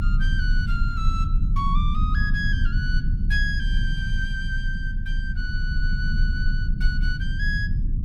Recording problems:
low-frequency rumble; below 70 Hz, strongest tone 30 Hz, SNR -5 dB

